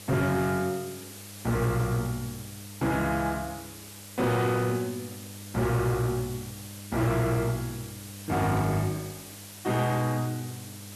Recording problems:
distorted audio; soft clipping, signal-to-distortion ratio 11 dB
electrical hum; 50 Hz, harmonics up to 600 Hz, SNR 18 dB
background hiss; slope -1 dB per octave, SNR 14 dB
static burst; at 8.5 s; peak -15 dB vs average level

